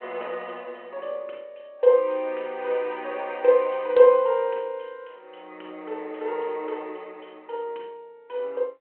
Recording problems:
phone line; 280 Hz to 3.2 kHz, G.726

